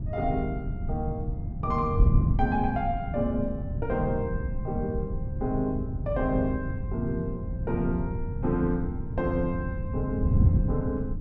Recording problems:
wind noise; below 140 Hz, SNR 0 dB

